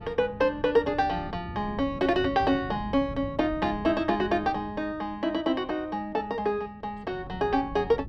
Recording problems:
wind noise; below 200 Hz, SNR 15 dB

